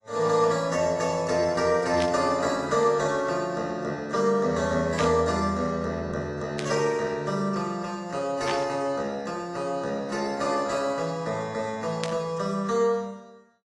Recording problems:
lossy codec; AAC, log-spectral distance 3 dB, nothing above 11.3 kHz
static burst; 5 times, first at 2 s; peak -2 dB vs average level

